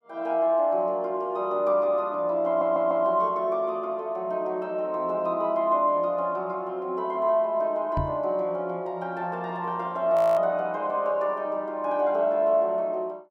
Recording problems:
stutter; at 2.5 s
microphone thump; at 8 s; peak 0 dB vs average level
audio freezing; at 10 s

